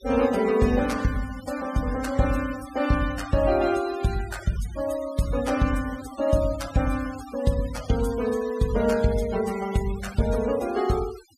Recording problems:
denoising artefacts; signal-to-artefact ratio 16 dB

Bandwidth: 15 kHz